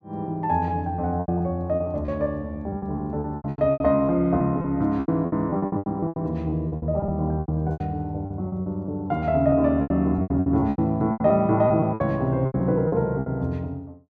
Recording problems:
packet loss; 17% of the sound replaced, filled with repeated pitch periods

